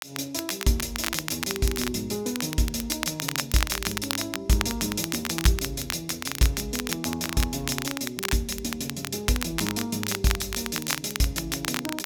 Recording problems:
crackle; vinyl, SNR 4 dB

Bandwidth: 17 kHz